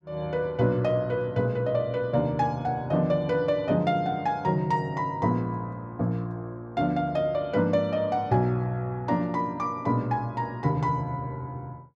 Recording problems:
none

